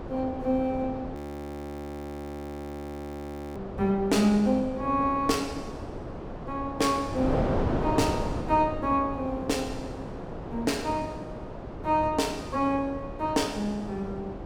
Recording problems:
wind noise; below 600 Hz, SNR 8 dB
audio freezing; at 1 s for 2.5 s

